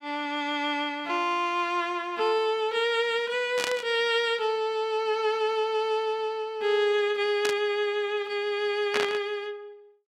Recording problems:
burst of static; at 3.5 s, at 7.5 s and at 9 s; peak +2 dB vs average level

